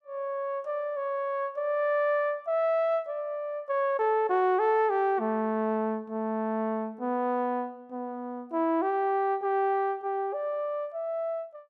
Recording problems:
none

